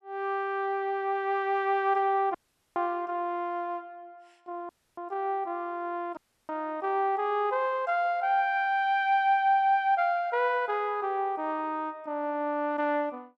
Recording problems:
dropout; at 2.5 s, at 4.5 s and at 6 s

